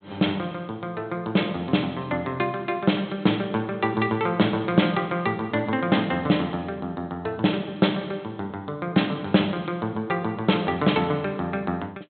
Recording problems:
treble missing; nothing above 4 kHz

